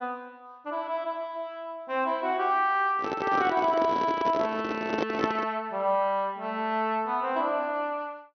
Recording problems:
treble missing; nothing above 6.1 kHz
microphone handling noise; from 3 to 5.5 s; peak +4 dB vs average level

